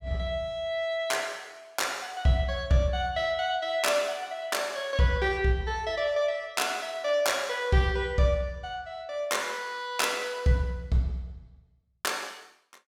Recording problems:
none

